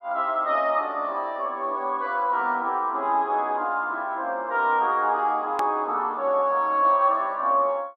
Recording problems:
hard cut with a click; at 5.5 s

